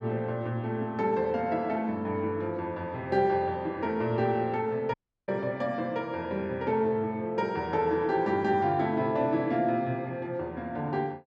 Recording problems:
dropout; at 5 s

